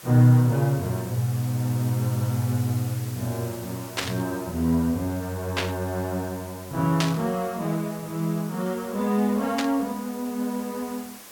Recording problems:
background hiss; slope -2 dB per octave, SNR 16 dB
static burst; 4 times, first at 4 s; peak +4 dB vs average level

